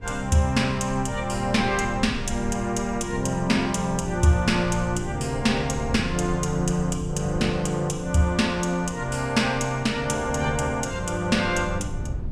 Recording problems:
wind noise; below 110 Hz, SNR 13 dB

